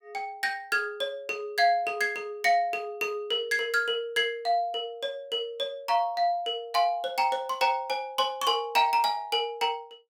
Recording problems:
none

